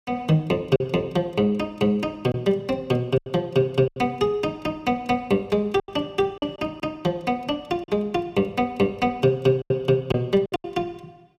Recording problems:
packet loss; 6% of the sound replaced, filled with silence

